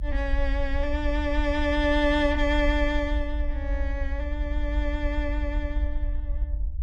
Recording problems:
low-frequency rumble; below 60 Hz, SNR 2 dB

